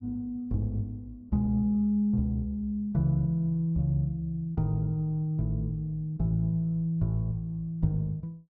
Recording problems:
none

